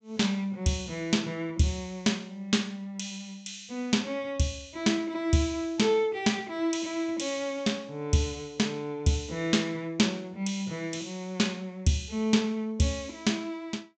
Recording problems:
low-pass filter; nothing above 8 kHz

